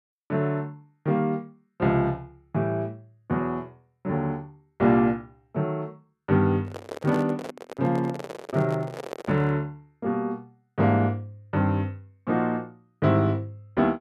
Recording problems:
microphone handling noise; from 6.5 to 9.5 s; peak -3 dB vs average level

